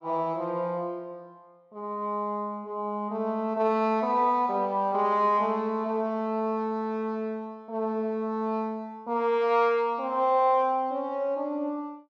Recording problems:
none

